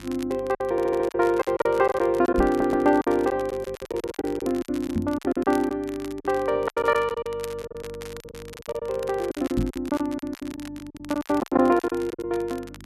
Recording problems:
electrical hum; 50 Hz, harmonics up to 350 Hz, SNR 21 dB
crackle; vinyl, SNR 20 dB
packet loss; 17% of the sound replaced, filled with silence
audio stuttering; at 0.5 s and at 2.5 s
microphone bump; at 2.5 s, at 5 s and at 9.5 s; peak +2 dB vs average level

